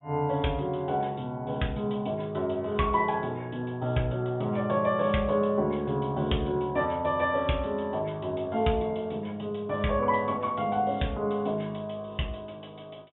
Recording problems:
low-pass filter; nothing above 3.6 kHz

